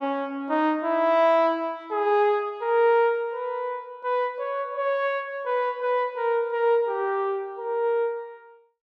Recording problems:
none

